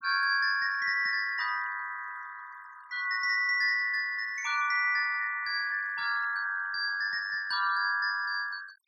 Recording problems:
noise reduction artefacts; signal-to-artefact ratio 20 dB

